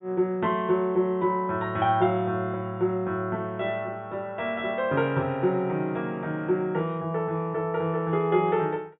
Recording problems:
treble missing; nothing above 4 kHz

